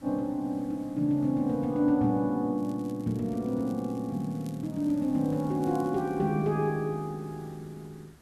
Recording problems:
hiss; slope -4 dB per octave, SNR 26 dB
crackle; from 2.5 to 6 s; loose cable, SNR 28 dB

